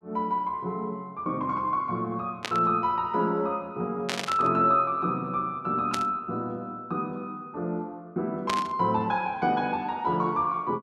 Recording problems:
burst of static; 4 times, first at 2.5 s; peak +1 dB vs average level

